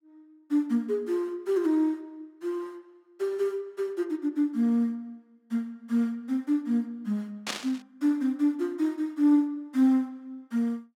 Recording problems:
static burst; at 7.5 s; peak +1 dB vs average level

